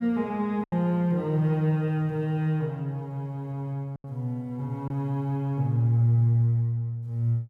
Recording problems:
lost packets; 2% of the sound replaced, filled with silence

